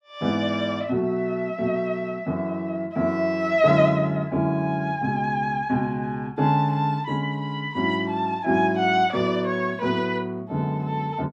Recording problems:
none

